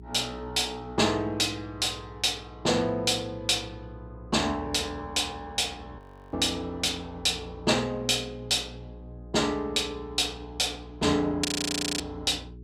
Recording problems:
hum; 60 Hz, harmonics up to 420 Hz, SNR 19 dB
audio freezing; at 6 s and at 11 s for 0.5 s

